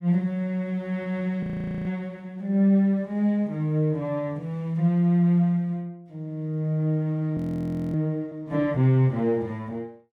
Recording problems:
audio freezing; at 1.5 s and at 7.5 s for 0.5 s

